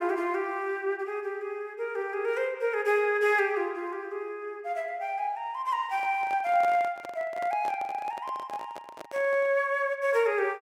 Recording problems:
handling noise; from 6 to 9.5 s; peak -6 dB vs average level

